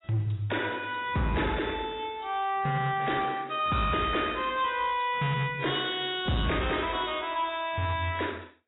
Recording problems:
lossy codec; AAC, log-spectral distance 8 dB, nothing above 3.7 kHz
distorted audio; hard clipping, signal-to-distortion ratio 11 dB

